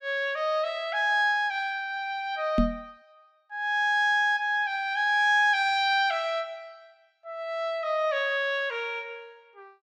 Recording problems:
microphone thump; at 2.5 s; peak +4 dB vs average level

